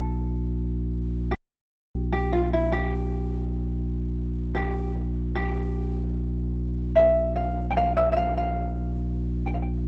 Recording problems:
lossy compression; Opus, log-spectral distance 2 dB
electrical hum; 60 Hz, harmonics up to 360 Hz, SNR 2 dB
audio cutting out; at 1.5 s for 0.5 s

